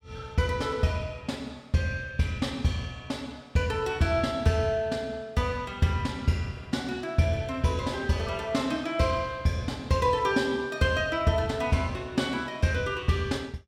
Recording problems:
none

